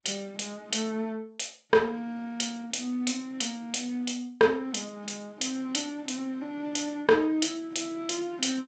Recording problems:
codec artefacts; G.722, log-spectral distance 4 dB, nothing above 7.6 kHz

